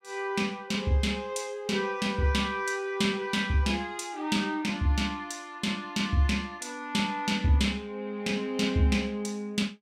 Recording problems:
none

